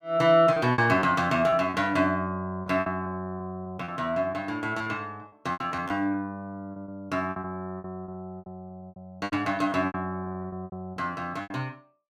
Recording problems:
packet loss; 13% of the sound replaced, filled with repeated pitch periods

